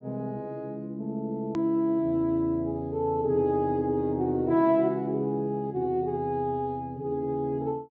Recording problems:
treble missing; nothing above 8 kHz
click at an edit; at 1.5 s

